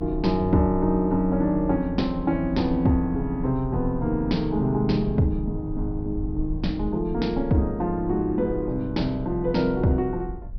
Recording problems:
treble cut off; nothing above 5.5 kHz
low-frequency rumble; below 74 Hz, SNR 11 dB

